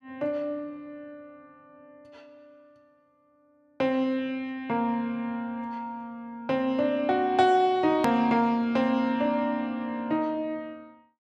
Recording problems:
edit click; at 8 s

